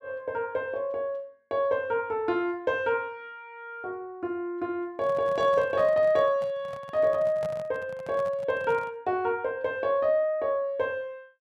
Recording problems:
handling noise; from 5 to 9 s; peak -8 dB vs average level

